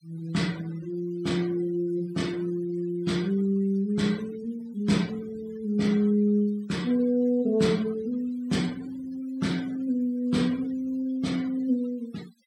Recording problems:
denoising artefacts; signal-to-artefact ratio 22 dB

